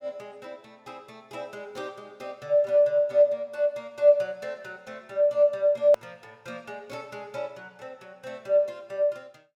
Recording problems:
click at an edit; at 6 s

